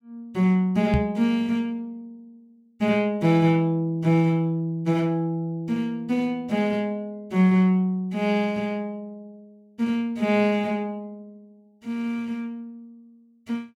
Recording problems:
microphone bump; at 1 s; peak +5 dB vs average level

